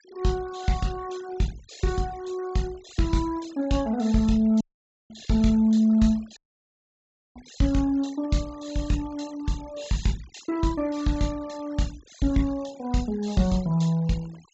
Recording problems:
treble cut off; nothing above 7.5 kHz
denoising artefacts; signal-to-artefact ratio 22 dB
dropout; at 4.5 s and at 6.5 s for 1 s

